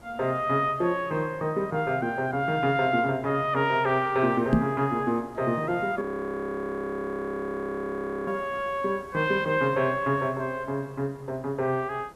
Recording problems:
background hiss; slope -7 dB per octave, SNR 25 dB
knock on the microphone; at 4.5 s; peak +9 dB vs average level
audio freezing; at 6 s for 2.5 s

